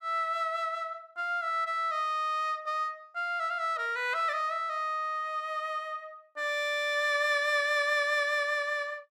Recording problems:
none

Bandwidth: 14.5 kHz